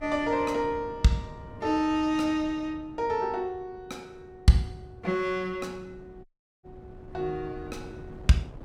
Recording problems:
wind on the microphone; below 290 Hz, SNR 19 dB
dropout; at 6.5 s

